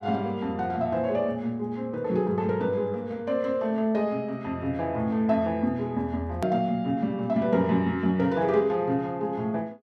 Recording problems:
edit click; at 6.5 s

